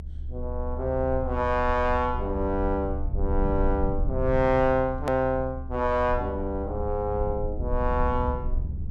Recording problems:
rumble; below 72 Hz, strongest tone 24 Hz, SNR 6 dB
click at an edit; at 5 s

